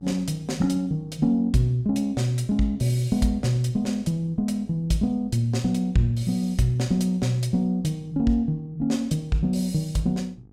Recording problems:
electrical hum; 50 Hz, harmonics up to 850 Hz, SNR 26 dB

